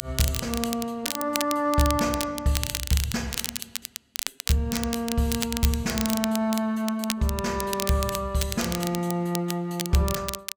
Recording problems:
crackle; vinyl, SNR 5 dB

